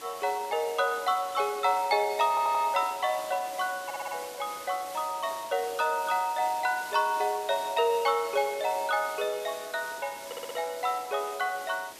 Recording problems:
hiss; slope -2 dB per octave, SNR 14 dB
stutter; at 2.5 s, at 4 s and at 10 s

